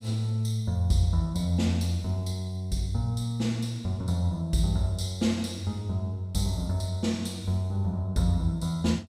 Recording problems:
none

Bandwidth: 15.5 kHz